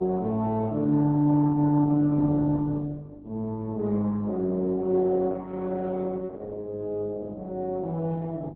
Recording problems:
lossy compression; Opus, log-spectral distance 2 dB
hum; 50 Hz, harmonics up to 400 Hz, SNR 23 dB

